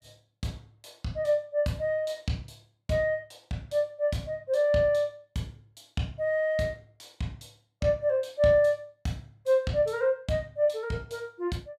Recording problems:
none

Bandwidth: 14.5 kHz